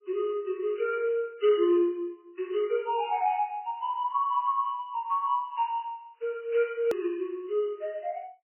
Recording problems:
lossy codec; MP3, log-spectral distance 2 dB, nothing above 2.9 kHz
edit click; at 7 s

